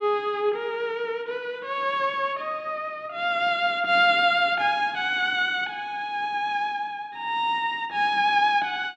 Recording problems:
none

